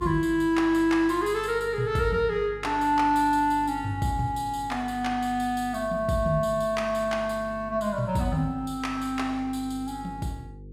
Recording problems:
electrical hum; 50 Hz, harmonics up to 500 Hz, SNR 18 dB

